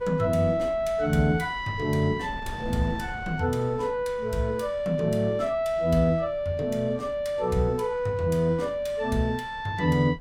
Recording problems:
wind on the microphone; below 200 Hz, SNR 19 dB

